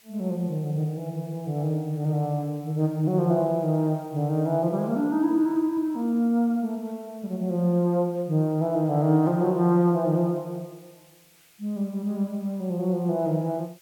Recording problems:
background hiss; slope +1 dB per octave, SNR 30 dB

